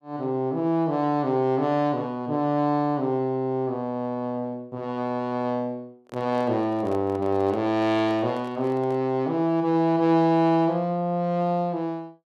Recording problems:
handling noise; from 6 to 9 s; peak -11 dB vs average level

